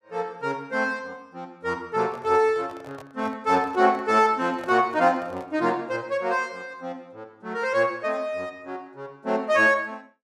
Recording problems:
handling noise; from 2 to 5.5 s; peak -11 dB vs average level

